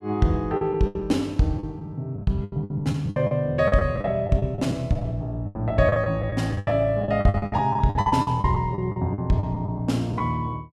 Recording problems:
packet loss; 17% of the sound replaced, filled with the last packet

